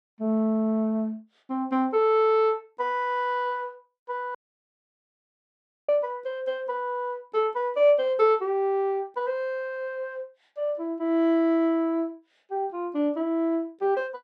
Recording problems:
audio cutting out; at 4.5 s for 1.5 s

